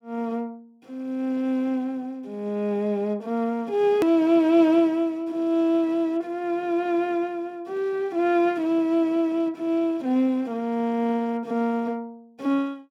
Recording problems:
click at an edit; at 4 s

